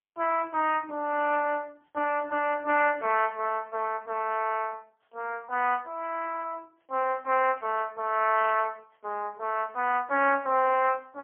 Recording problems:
phone line; 260 Hz to 3.1 kHz, AMR-NB, then MP3

